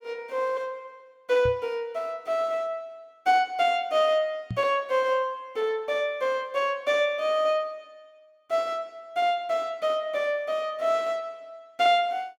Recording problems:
microphone bump; at 1.5 s and at 4.5 s; peak -2 dB vs average level

